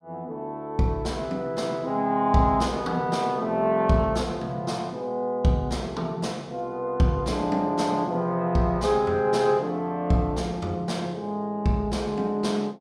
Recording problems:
none

